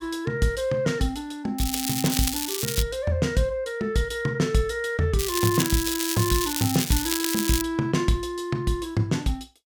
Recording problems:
crackling; from 1.5 to 3 s and from 5 to 7.5 s; loose cable, SNR 2 dB

